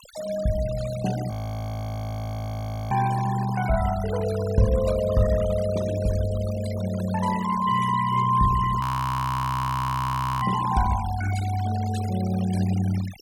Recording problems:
noise reduction artefacts; signal-to-artefact ratio 14 dB
frozen audio; at 1.5 s for 1.5 s and at 9 s for 1.5 s

